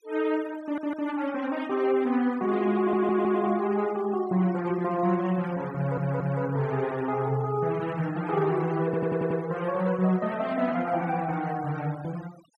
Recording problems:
noise reduction artefacts; signal-to-artefact ratio 21 dB
stutter; 4 times, first at 0.5 s

